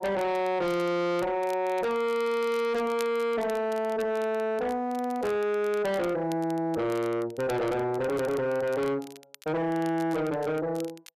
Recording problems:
distortion; soft clipping, signal-to-distortion ratio 6 dB
crackling; vinyl, SNR 22 dB

